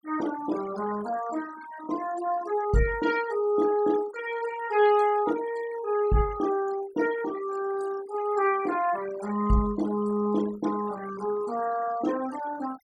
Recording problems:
denoising artefacts; signal-to-artefact ratio 16 dB

